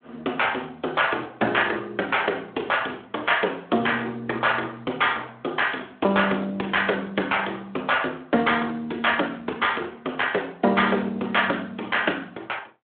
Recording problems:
telephone audio; 260 Hz to 3.5 kHz, Speex

